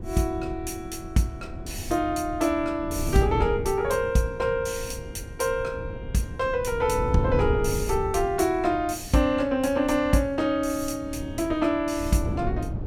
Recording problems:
wind on the microphone; below 190 Hz, SNR 9 dB

